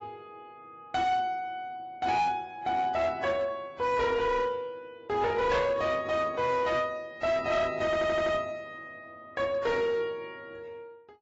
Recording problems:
codec artefacts; AAC, log-spectral distance 2 dB, nothing above 7.6 kHz
distortion; hard clipping, signal-to-distortion ratio 11 dB
audio stuttering; at 8 s

